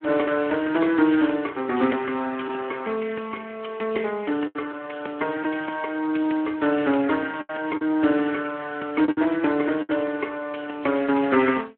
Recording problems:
phone line; 220 Hz to 3.3 kHz, Speex
lost packets; 3% of the sound replaced, filled with the last packet

